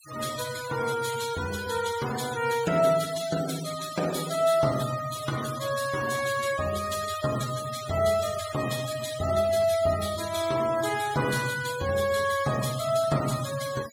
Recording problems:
noise reduction artefacts; signal-to-artefact ratio 11 dB

